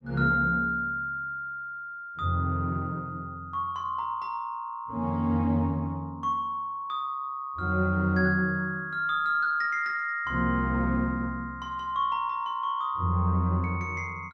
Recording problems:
none

